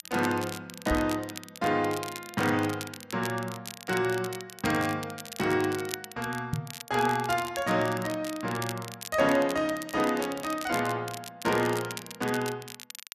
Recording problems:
crackling; vinyl, SNR 12 dB
microphone thump; at 1 s and at 6.5 s; peak +3 dB vs average level

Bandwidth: 14 kHz